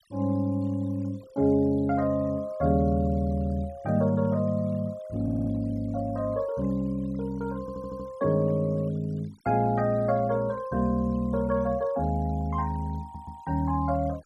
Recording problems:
noise reduction artefacts; signal-to-artefact ratio 27 dB
stutter; at 5 s, at 7.5 s and at 13 s

